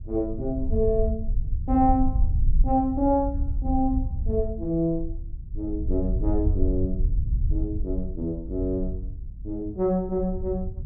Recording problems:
low-frequency rumble; below 70 Hz, SNR 3 dB

